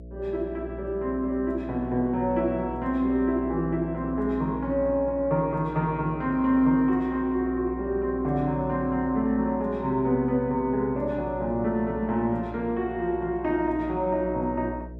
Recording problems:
hum; 60 Hz, harmonics up to 660 Hz, SNR 14 dB

